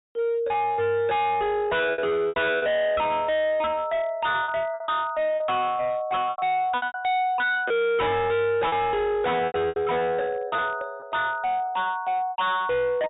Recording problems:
treble cut off; nothing above 4 kHz
distorted audio; hard clipping, uneven, signal-to-distortion ratio 6 dB
packet loss; 8% of the sound replaced, filled with repeated pitch periods

